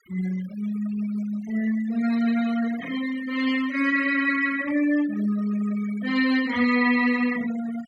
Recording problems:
noise reduction artefacts; signal-to-artefact ratio 16 dB

